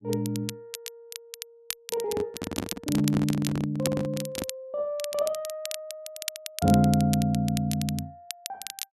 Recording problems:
crackle; vinyl, SNR 10 dB
handling noise; from 2 to 4.5 s; peak +1 dB vs average level

